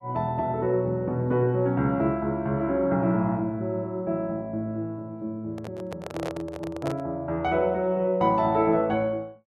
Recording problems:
handling noise; from 5.5 to 7 s; peak -3 dB vs average level

